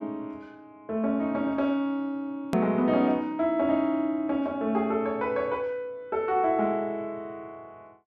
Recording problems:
edit click; at 2.5 s

